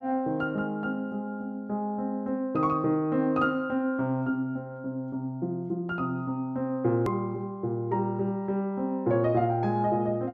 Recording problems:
hard cut with a click; at 7 s

